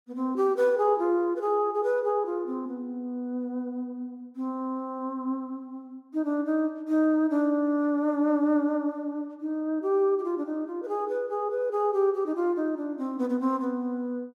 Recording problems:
none

